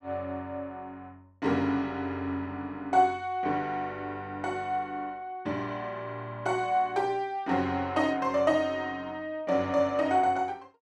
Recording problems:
none

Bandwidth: 12.5 kHz